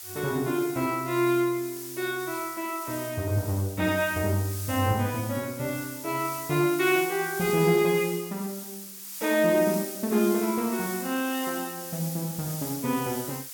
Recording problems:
hiss; slope +4 dB per octave, SNR 10 dB

